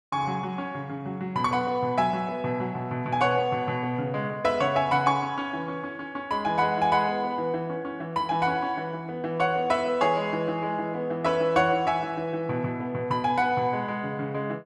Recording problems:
none

